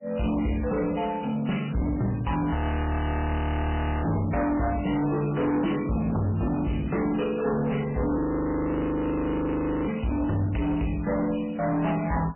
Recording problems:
lossy codec; MP3, log-spectral distance 6 dB, nothing above 3 kHz
distorted audio; soft clipping, signal-to-distortion ratio 8 dB
audio freezing; at 2.5 s for 1.5 s and at 8 s for 1.5 s

